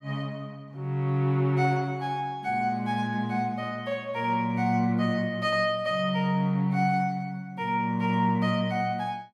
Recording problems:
none

